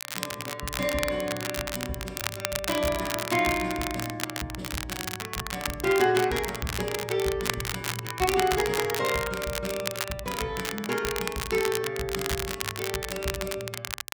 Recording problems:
crackling; vinyl, SNR 4 dB

